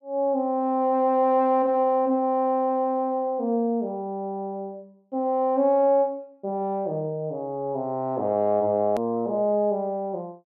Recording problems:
hard cut with a click; at 9 s

